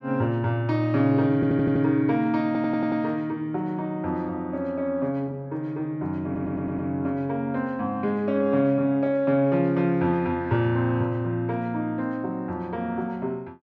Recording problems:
audio stuttering; at 1.5 s, at 2.5 s and at 6 s

